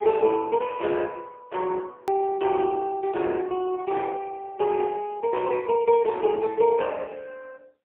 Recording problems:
telephone audio; 280 Hz to 3.5 kHz, AMR-NB, then MP3
edit click; at 2 s

